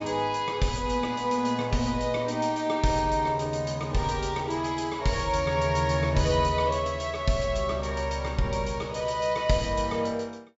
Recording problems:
low-pass filter; nothing above 8 kHz

